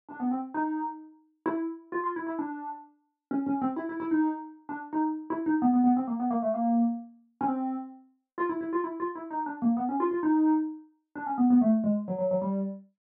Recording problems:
none

